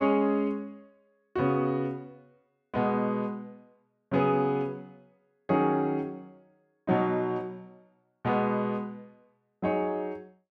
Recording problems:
none

